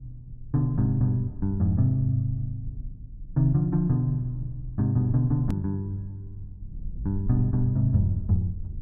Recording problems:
low-frequency rumble; below 68 Hz, SNR 14 dB
edit click; at 5.5 s

